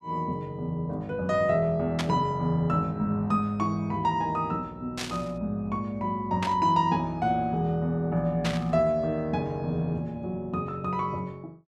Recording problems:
burst of static; 4 times, first at 2 s; peak +1 dB vs average level

